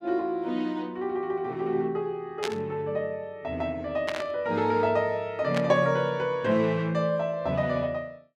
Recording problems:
static burst; at 2.5 s, at 4 s and at 5.5 s; peak 0 dB vs average level

